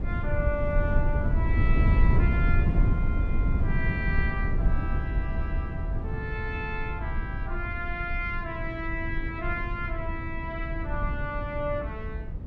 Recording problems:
low-frequency rumble; below 98 Hz, SNR -5 dB

